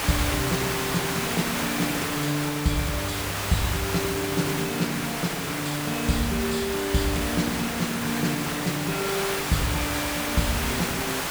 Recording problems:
hiss; SNR 0 dB

